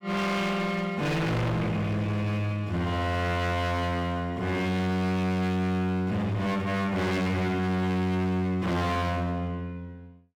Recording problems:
distortion; hard clipping, signal-to-distortion ratio 6 dB

